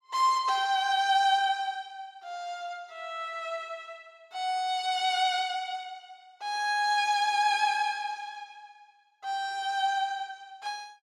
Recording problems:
none

